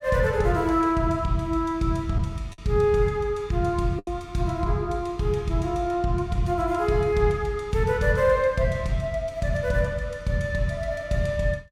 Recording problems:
lost packets; 1.2% of the sound replaced, filled with the last packet

